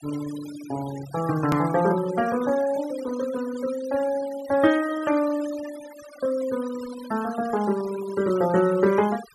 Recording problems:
denoising artefacts; signal-to-artefact ratio 16 dB
edit click; at 1.5 s

